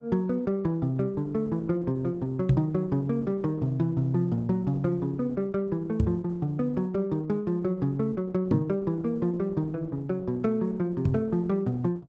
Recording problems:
codec artefacts; Opus, log-spectral distance 2 dB, nothing above 7.3 kHz
microphone thump; 4 times, first at 2.5 s; peak +9 dB vs average level

